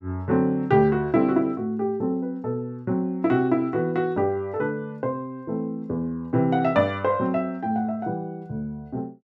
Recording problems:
none

